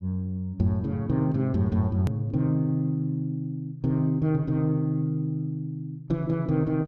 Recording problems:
hard cut with a click; at 2 s

